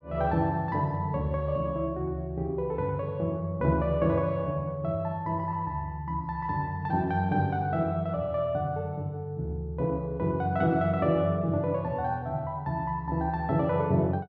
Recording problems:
none

